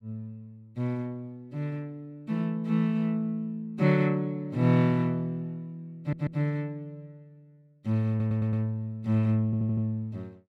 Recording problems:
audio stuttering; at 6 s, at 8 s and at 9.5 s

